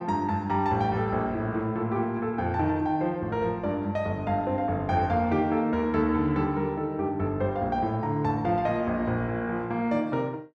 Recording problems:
none

